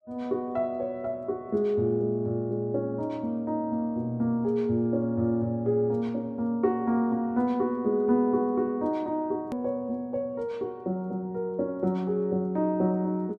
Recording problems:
hard cut with a click; at 9.5 s

